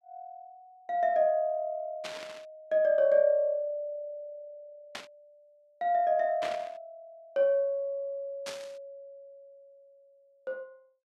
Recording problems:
burst of static; 4 times, first at 2 s; peak -5 dB vs average level

